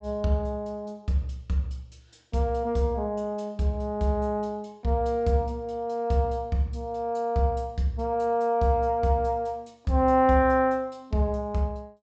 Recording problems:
treble missing; nothing above 8 kHz

